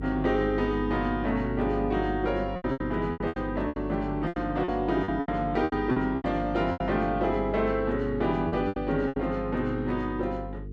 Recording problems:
electrical hum; 50 Hz, harmonics up to 450 Hz, SNR 10 dB
lost packets; 11% of the sound replaced, filled with repeated pitch periods

